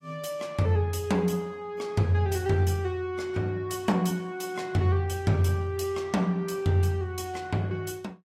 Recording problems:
lossy compression; AAC, log-spectral distance 2 dB, nothing above 14.3 kHz

